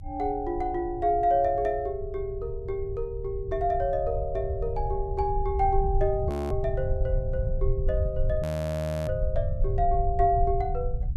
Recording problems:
rumble; below 88 Hz, SNR 4 dB
audio freezing; at 6.5 s and at 8.5 s for 0.5 s

